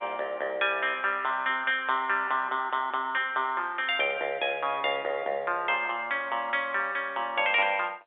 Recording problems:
telephone audio; 300 Hz to 3.6 kHz, G.711

